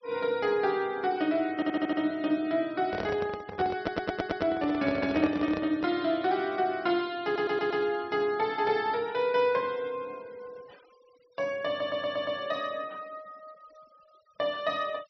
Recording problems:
treble missing; nothing above 5.8 kHz
noise reduction artefacts; signal-to-artefact ratio 26 dB
audio stuttering; 4 times, first at 1.5 s
microphone handling noise; from 3 to 6 s; peak -1 dB vs average level

